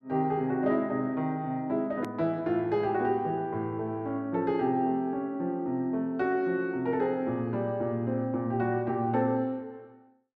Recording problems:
edit click; at 2 s

